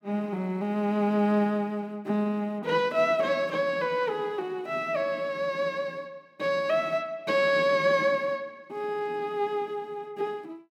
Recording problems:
none

